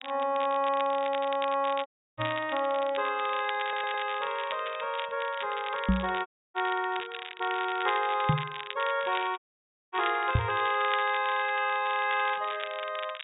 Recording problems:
low-pass filter; nothing above 4 kHz
crackle; vinyl, SNR 11 dB
dropout; at 2 s, at 6.5 s and at 9.5 s for 0.5 s
knock on the microphone; 4 times, first at 2 s; peak +7 dB vs average level
stutter; at 3.5 s

